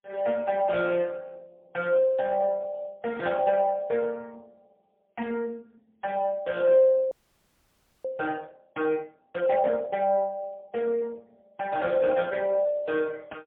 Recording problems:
telephone audio; 240 Hz to 3.4 kHz, AMR-NB, then MP3
frozen audio; at 7 s for 1 s

